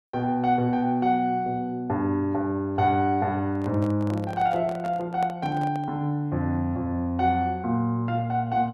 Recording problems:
handling noise; from 3.5 to 6 s; peak -6 dB vs average level

